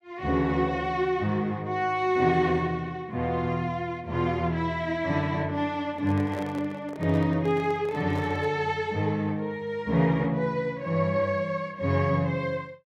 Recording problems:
microphone handling noise; from 6 to 8.5 s; peak -8 dB vs average level

